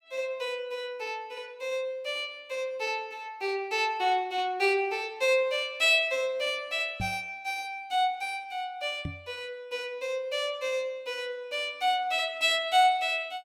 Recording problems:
microphone bump; at 7 s and at 9 s; peak -3 dB vs average level

